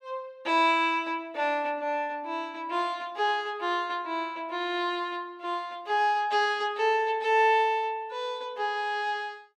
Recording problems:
none

